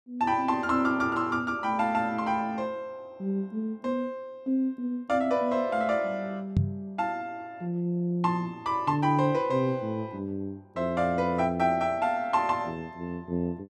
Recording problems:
microphone thump; at 6.5 s; peak +6 dB vs average level

